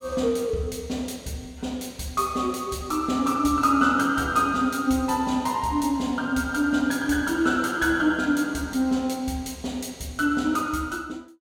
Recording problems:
none

